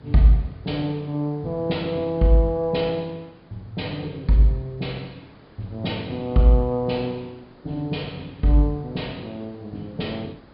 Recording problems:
low-pass filter; nothing above 5 kHz
background hiss; SNR 26 dB

